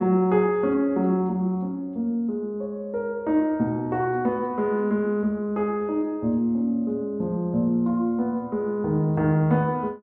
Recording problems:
none

